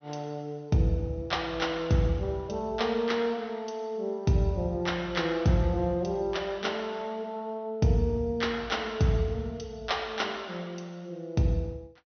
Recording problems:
low-pass filter; nothing above 6.1 kHz

